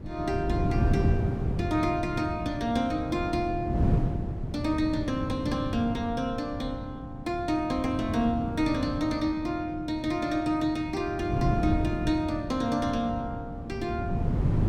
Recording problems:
wind noise; below 210 Hz, SNR 3 dB

